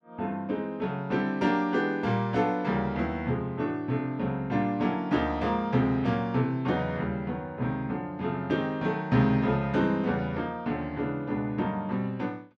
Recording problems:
none

